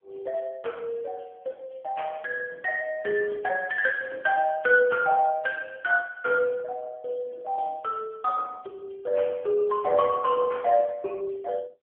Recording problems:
telephone audio; 220 Hz to 2.9 kHz, AMR-NB

